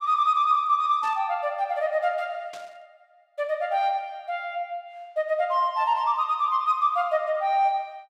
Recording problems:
static burst; at 1 s and at 2.5 s; peak -15 dB vs average level

